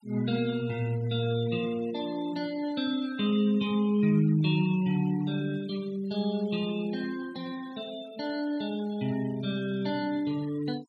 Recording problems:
denoising artefacts; signal-to-artefact ratio 20 dB

